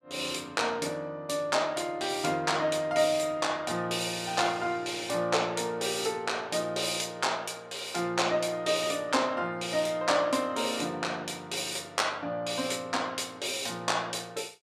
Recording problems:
none

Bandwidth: 14 kHz